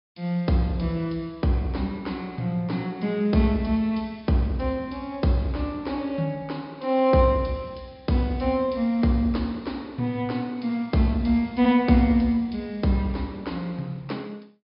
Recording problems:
treble cut off; nothing above 5.5 kHz

